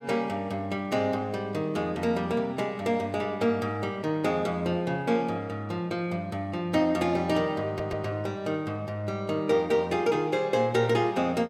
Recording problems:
audio stuttering; at 7.5 s

